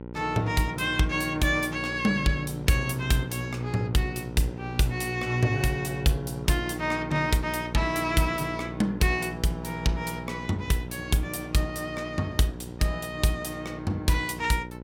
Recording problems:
hum; 60 Hz, harmonics up to 1.1 kHz, SNR 11 dB

